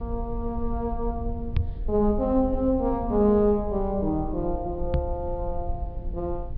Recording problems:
low-pass filter; nothing above 5.5 kHz
rumble; below 64 Hz, SNR 9 dB
microphone thump; at 1.5 s and at 5 s; peak +6 dB vs average level

